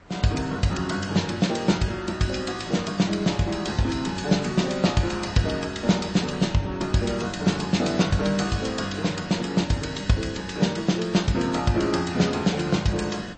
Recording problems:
lossy codec; MP3, log-spectral distance 4 dB, nothing above 8.2 kHz
wind noise; below 1.2 kHz, SNR 23 dB

